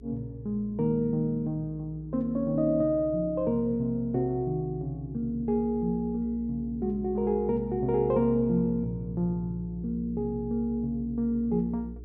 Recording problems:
hum; 60 Hz, harmonics up to 420 Hz, SNR 16 dB

